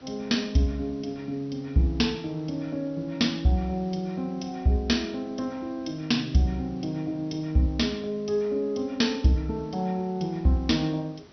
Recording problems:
low-pass filter; nothing above 5.9 kHz
background hiss; slope -4 dB per octave, SNR 25 dB

